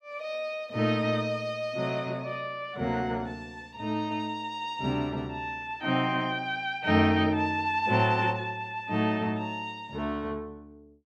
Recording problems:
none

